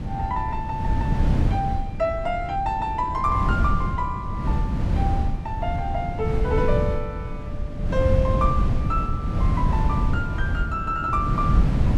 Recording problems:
wind on the microphone; below 140 Hz, SNR -2 dB

